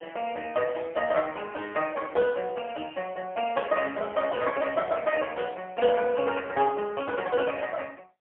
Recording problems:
phone line; 220 Hz to 3.1 kHz, AMR-NB, then MP3

